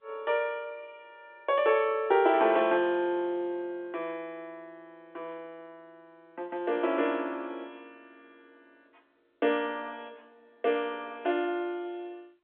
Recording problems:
phone line; 300 Hz to 3.6 kHz, G.711

